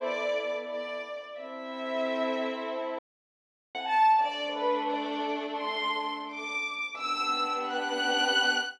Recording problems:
audio cutting out; at 3 s for 1 s

